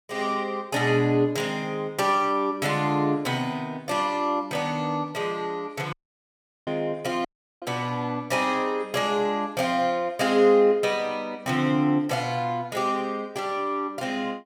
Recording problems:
audio cutting out; at 6 s for 0.5 s and at 7.5 s

